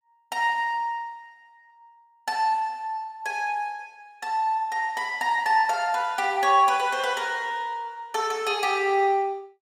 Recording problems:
none

